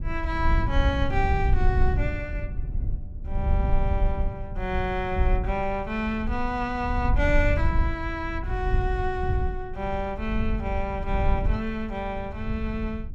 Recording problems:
low-frequency rumble; below 74 Hz, SNR 0 dB

